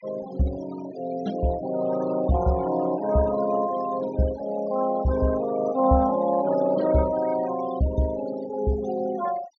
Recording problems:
treble missing; nothing above 6.6 kHz
noise reduction artefacts; signal-to-artefact ratio 16 dB

